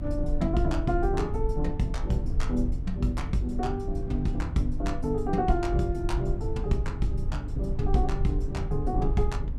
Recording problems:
electrical hum; 50 Hz, harmonics up to 300 Hz, SNR 14 dB
rumble; below 64 Hz, SNR 3 dB

